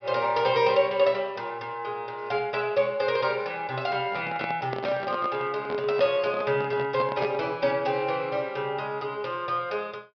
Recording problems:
treble missing; nothing above 5.5 kHz
handling noise; from 4 to 7.5 s; peak -2 dB vs average level

